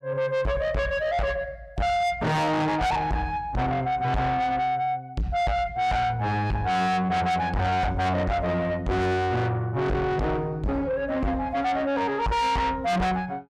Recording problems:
distorted audio; soft clipping, signal-to-distortion ratio 6 dB

